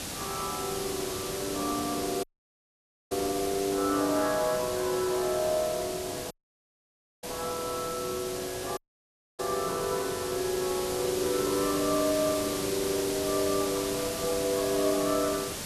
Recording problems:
hiss; slope -2 dB per octave, SNR 5 dB
audio cutting out; at 2 s for 1 s, at 6.5 s for 1 s and at 9 s for 0.5 s

